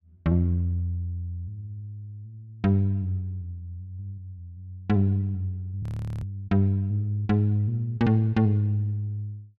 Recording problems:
audio freezing; at 6 s

